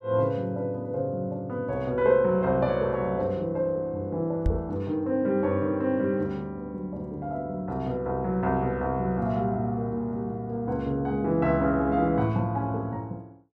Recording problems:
microphone bump; at 4.5 s; peak +5 dB vs average level

